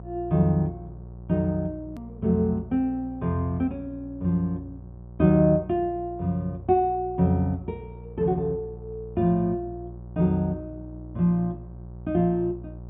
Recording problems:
treble cut off; nothing above 4 kHz
electrical hum; 60 Hz, harmonics up to 780 Hz, SNR 16 dB
hard cut with a click; at 2 s

